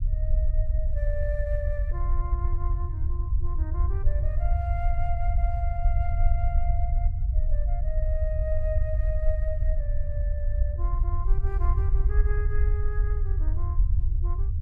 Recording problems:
low-frequency rumble; below 64 Hz, SNR -11 dB

